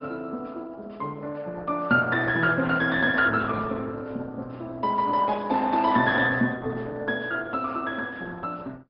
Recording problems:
low-pass filter; nothing above 5.2 kHz
codec artefacts; Opus, log-spectral distance 3 dB

